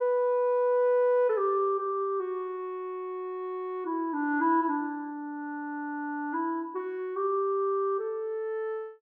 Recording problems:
none

